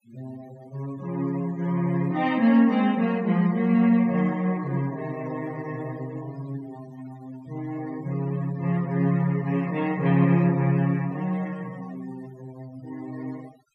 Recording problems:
denoising artefacts; signal-to-artefact ratio 24 dB

